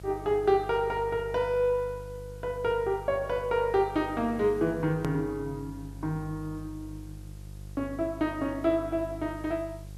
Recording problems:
mains hum; 50 Hz, harmonics up to 550 Hz, SNR 15 dB
background hiss; slope +2 dB per octave, SNR 29 dB
click at an edit; at 5 s

